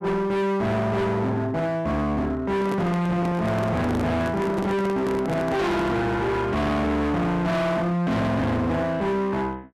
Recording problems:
distortion; hard clipping, signal-to-distortion ratio 6 dB
microphone handling noise; from 2.5 to 6 s; peak 0 dB vs average level

